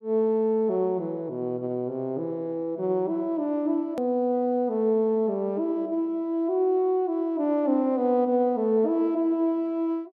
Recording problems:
hard cut with a click; at 4 s

